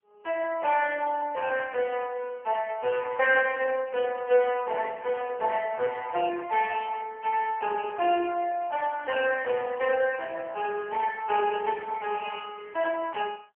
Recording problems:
telephone audio; 320 Hz to 2.8 kHz, AMR-NB
handling noise; from 5 to 6.5 s; peak -15 dB vs average level

